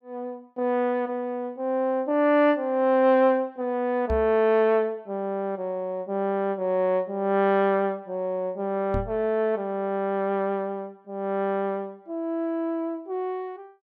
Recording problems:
knock on the microphone; at 4 s and at 9 s; peak -2 dB vs average level

